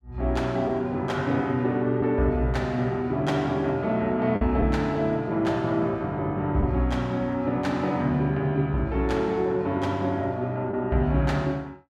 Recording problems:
packet loss; 0.9% of the sound replaced, filled with the last packet

